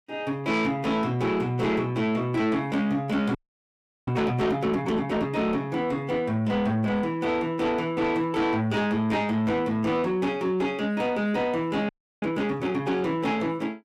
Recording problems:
distortion; soft clipping, signal-to-distortion ratio 11 dB
audio freezing; at 3.5 s for 0.5 s and at 12 s

